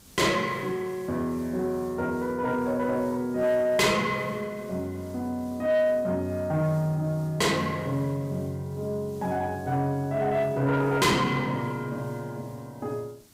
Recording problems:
distortion; soft clipping, signal-to-distortion ratio 7 dB
background hiss; SNR 25 dB

